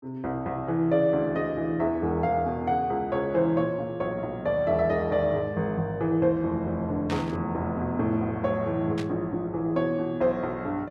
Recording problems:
static burst; at 7 s and at 9 s; peak -6 dB vs average level

